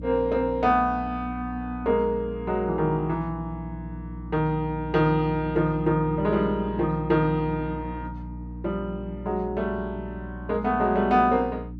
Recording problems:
electrical hum; 60 Hz, harmonics up to 300 Hz, SNR 12 dB

